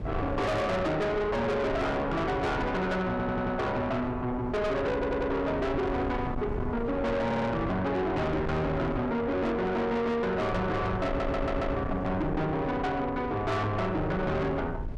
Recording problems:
distorted audio; soft clipping, signal-to-distortion ratio 6 dB
low-frequency rumble; below 420 Hz, SNR 9 dB
audio stuttering; 4 times, first at 3 s

